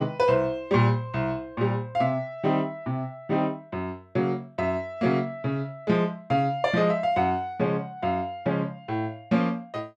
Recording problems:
none

